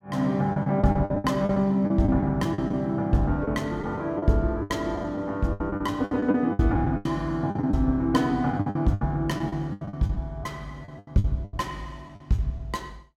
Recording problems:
lost packets; 14% of the sound replaced, filled with the last packet

